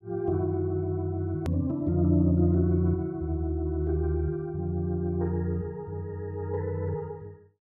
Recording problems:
click at an edit; at 1.5 s

